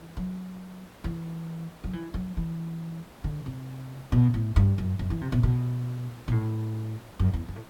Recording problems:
background hiss; slope -5 dB per octave, SNR 20 dB

